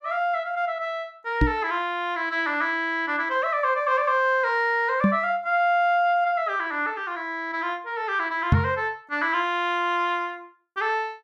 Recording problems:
microphone bump; at 1.5 s, at 5 s and at 8.5 s; peak +9 dB vs average level

